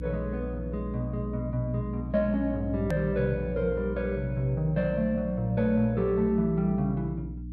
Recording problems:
hum; 60 Hz, harmonics up to 300 Hz, SNR 8 dB
edit click; at 3 s

